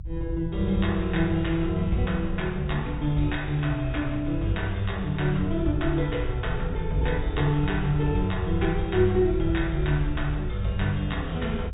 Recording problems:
treble cut off; nothing above 4 kHz
rumble; below 72 Hz, SNR 7 dB

